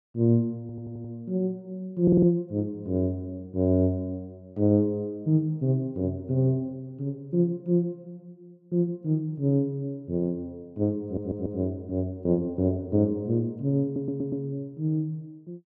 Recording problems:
stutter; 4 times, first at 0.5 s

